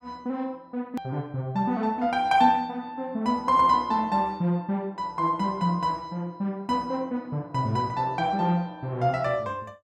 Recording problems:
edit click; at 1 s

